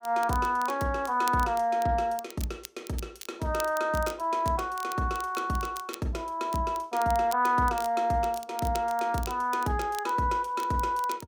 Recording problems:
crackle; vinyl, SNR 17 dB

